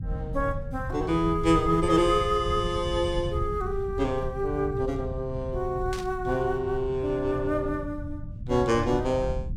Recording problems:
rumble; below 120 Hz, SNR 9 dB
burst of static; at 6 s; peak -7 dB vs average level

